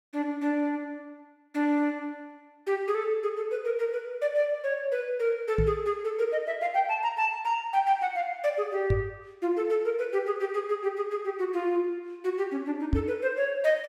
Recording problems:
microphone thump; at 5.5 s, at 9 s and at 13 s; peak +7 dB vs average level

